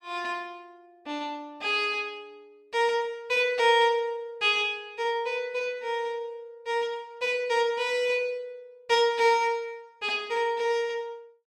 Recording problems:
none

